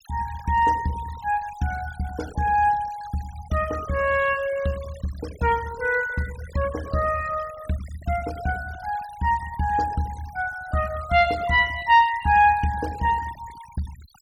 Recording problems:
denoising artefacts; signal-to-artefact ratio 19 dB

